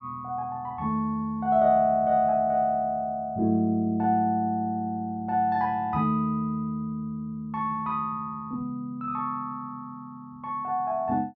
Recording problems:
none

